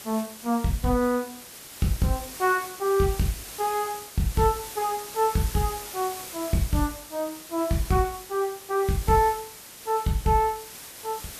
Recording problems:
background hiss; slope -1 dB per octave, SNR 12 dB

